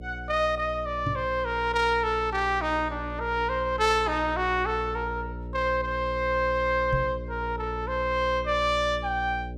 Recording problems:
hum; 60 Hz, harmonics up to 600 Hz, SNR 11 dB
microphone thump; at 1 s and at 7 s; peak 0 dB vs average level

